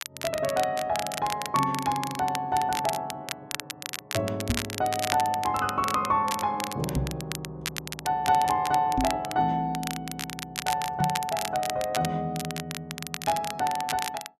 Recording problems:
crackle; vinyl, SNR 8 dB
knock on the microphone; 4 times, first at 4.5 s; peak +3 dB vs average level

